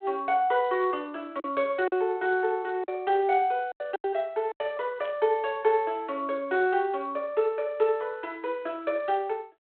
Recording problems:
telephone audio; 300 Hz to 3.7 kHz, G.726
lost packets; 4% of the sound replaced, filled with silence
burst of static; at 5 s; peak -15 dB vs average level

